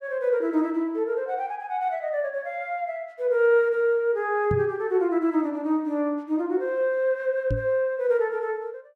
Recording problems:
microphone thump; at 4.5 s and at 7.5 s; peak +1 dB vs average level

